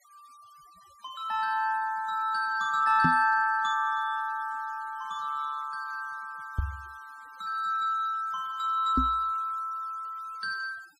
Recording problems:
denoising artefacts; signal-to-artefact ratio 28 dB
knock on the microphone; at 3 s, at 6.5 s and at 9 s; peak +4 dB vs average level

